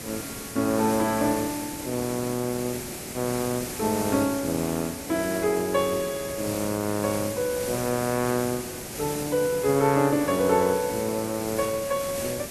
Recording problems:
background hiss; SNR 8 dB

